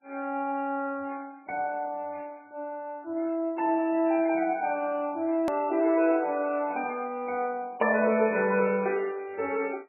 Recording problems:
lossy codec; MP3, log-spectral distance 2 dB, nothing above 2.4 kHz
click at an edit; at 5.5 s

